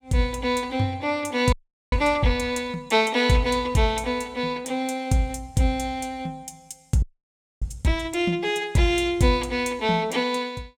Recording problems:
frozen audio; at 1.5 s and at 7 s for 0.5 s

